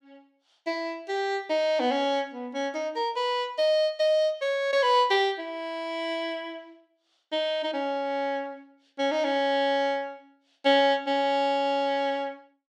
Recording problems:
none

